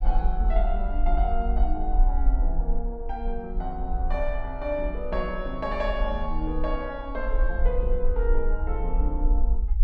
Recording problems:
low-frequency rumble; below 46 Hz, SNR -3 dB

